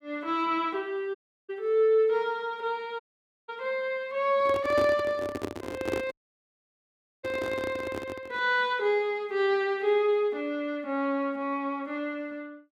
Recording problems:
audio cutting out; at 1 s, at 3 s and at 6 s for 1 s
microphone handling noise; from 4.5 to 8.5 s; peak +1 dB vs average level

